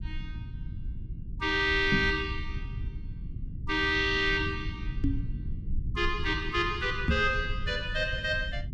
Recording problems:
low-frequency rumble; below 100 Hz, SNR 9 dB
microphone bump; at 2 s, at 5 s and at 7 s; peak +4 dB vs average level

